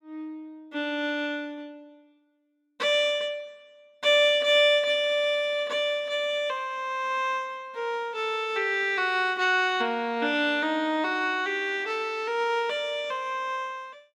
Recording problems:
none

